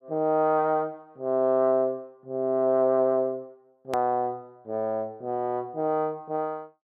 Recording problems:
edit click; at 4 s

